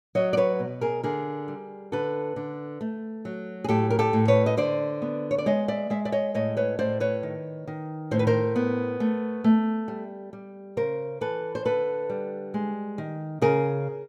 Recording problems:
none

